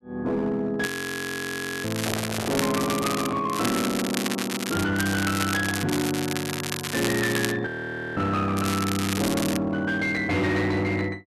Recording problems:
distorted audio; hard clipping, signal-to-distortion ratio 11 dB
crackling; 4 times, first at 1 s; loose cable, SNR 5 dB
frozen audio; at 1 s for 1 s and at 7.5 s for 0.5 s
handling noise; from 2 to 3.5 s; peak -4 dB vs average level

